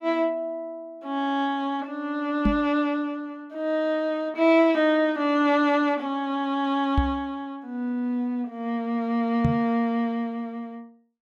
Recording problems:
microphone bump; at 2.5 s, at 7 s and at 9.5 s; peak +5 dB vs average level

